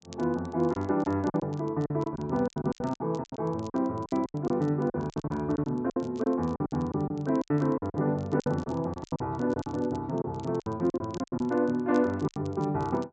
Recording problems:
treble cut off; nothing above 8 kHz
crackling; vinyl, SNR 27 dB
lost packets; 15% of the sound replaced, filled with silence

